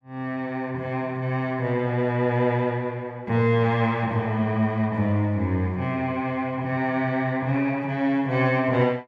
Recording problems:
none

